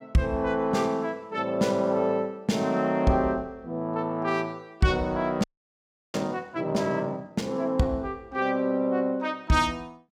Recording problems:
frozen audio; at 5.5 s for 0.5 s

